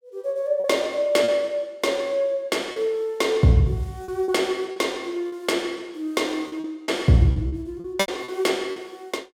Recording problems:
packet loss; 7% of the sound replaced, filled with repeated pitch periods

